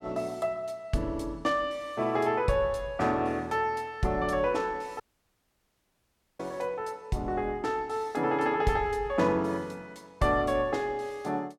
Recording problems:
audio cutting out; at 5 s for 1.5 s

